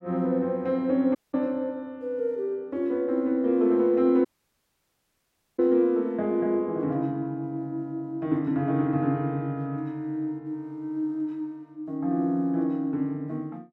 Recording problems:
audio cutting out; at 1 s and at 4.5 s for 1.5 s

